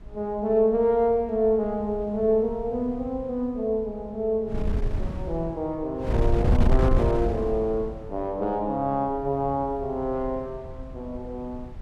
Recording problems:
wind noise; below 100 Hz, SNR 4 dB

